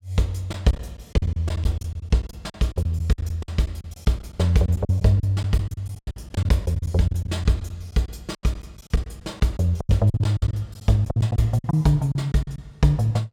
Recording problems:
lost packets; 15% of the sound replaced, filled with silence

